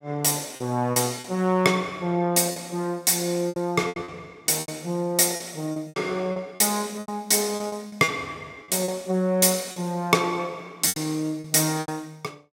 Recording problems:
lost packets; 10% of the sound replaced, filled with repeated pitch periods

